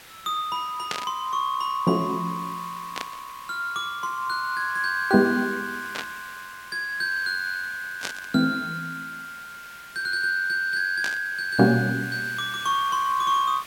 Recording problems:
background hiss; SNR 18 dB
burst of static; 5 times, first at 1 s; peak 0 dB vs average level

